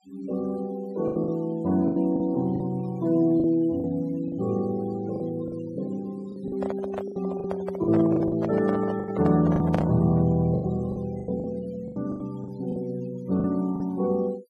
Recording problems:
noise reduction artefacts; signal-to-artefact ratio 23 dB
lost packets; 11% of the sound replaced, filled with the last packet
microphone handling noise; from 6.5 to 10 s; peak +1 dB vs average level

